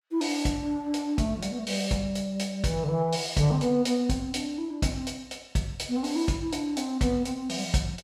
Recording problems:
none

